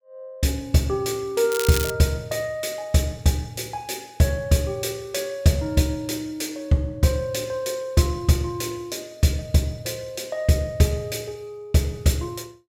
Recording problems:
crackle; at 1.5 s; loose cable, SNR 5 dB

